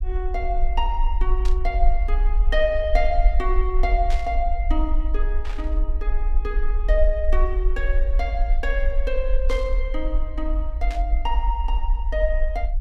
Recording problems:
rumble; below 44 Hz, SNR -3 dB
burst of static; 5 times, first at 1.5 s; peak -5 dB vs average level

